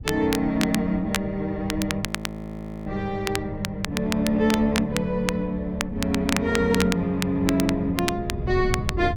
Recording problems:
wind on the microphone; below 130 Hz, SNR 12 dB
crackle; vinyl, SNR 7 dB
frozen audio; at 2 s for 1 s

